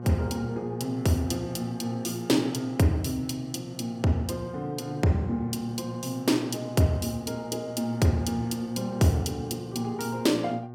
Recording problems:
hum; 60 Hz, harmonics up to 1.1 kHz, SNR 12 dB

